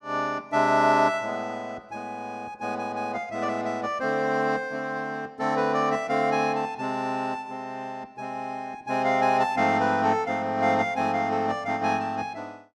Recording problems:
none

